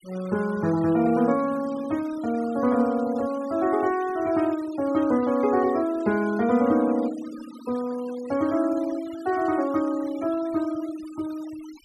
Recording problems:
noise reduction artefacts; signal-to-artefact ratio 20 dB

